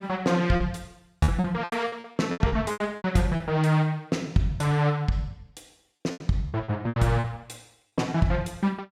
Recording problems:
lost packets; 12% of the sound replaced, filled with repeated pitch periods

